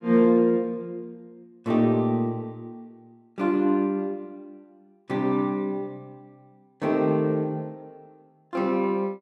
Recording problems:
none

